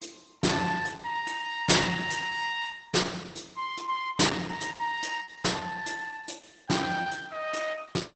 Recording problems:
lossy compression; Opus, log-spectral distance 7 dB, nothing above 8.2 kHz
distortion; hard clipping, uneven, signal-to-distortion ratio 8 dB
packet loss; 1.3% of the sound replaced, filled with repeated pitch periods

